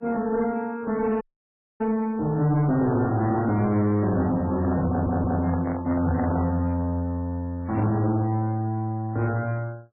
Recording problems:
codec artefacts; MP3, log-spectral distance 2 dB
distorted audio; soft clipping, signal-to-distortion ratio 10 dB
dropout; at 1 s for 0.5 s
handling noise; from 4.5 to 6.5 s; peak -3 dB vs average level
audio stuttering; at 5 s

